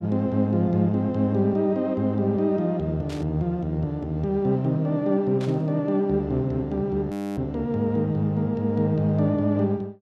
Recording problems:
burst of static; at 3 s and at 5.5 s; peak -13 dB vs average level
audio freezing; at 7 s

